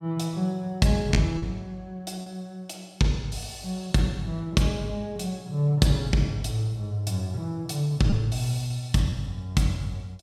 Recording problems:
packet loss; 1.6% of the sound replaced, filled with repeated pitch periods

